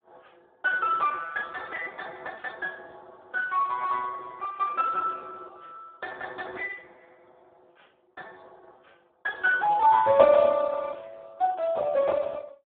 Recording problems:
telephone audio; 220 Hz to 3 kHz, Speex

